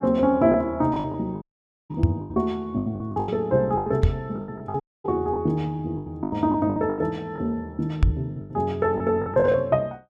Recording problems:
packet loss; 15% of the sound replaced, filled with the last packet
dropout; at 1.5 s and at 5 s
microphone bump; at 2 s, at 4 s and at 8 s; peak +9 dB vs average level

